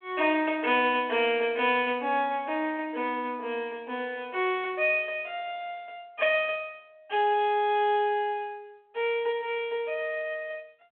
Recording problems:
phone line; 260 Hz to 3.4 kHz, G.726

